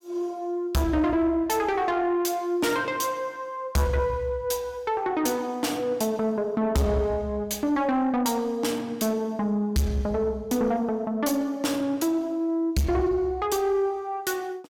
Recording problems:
distorted audio; soft clipping, signal-to-distortion ratio 10 dB

